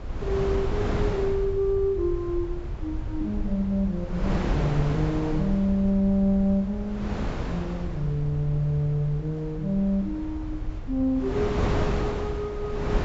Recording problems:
low-pass filter; nothing above 8 kHz
rumble; below 78 Hz, SNR 10 dB
wind noise; below 540 Hz, SNR 5 dB

